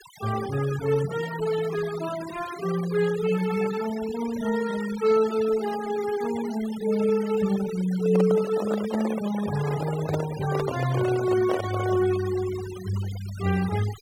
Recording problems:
denoising artefacts; signal-to-artefact ratio 14 dB
handling noise; from 8 to 12 s; peak -1 dB vs average level

